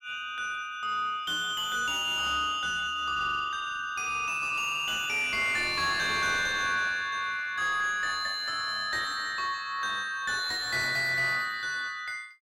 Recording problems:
distortion; soft clipping, signal-to-distortion ratio 11 dB

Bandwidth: 16.5 kHz